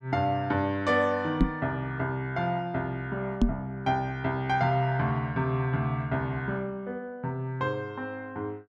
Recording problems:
microphone bump; at 1.5 s and at 3.5 s; peak +9 dB vs average level

